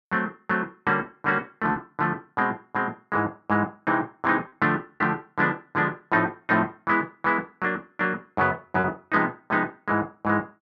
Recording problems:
lost packets; 1.5% of the sound replaced, filled with repeated pitch periods

